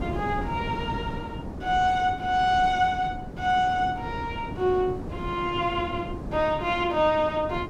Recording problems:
wind on the microphone; below 360 Hz, SNR 10 dB

